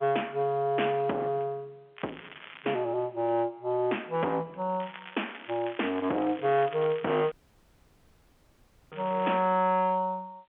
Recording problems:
telephone audio; 240 Hz to 3.4 kHz, G.711
distortion; hard clipping, uneven, signal-to-distortion ratio 11 dB
crackle; at 2 s and from 5 to 9.5 s; loose cable, SNR 18 dB
audio cutting out; at 7.5 s for 1.5 s

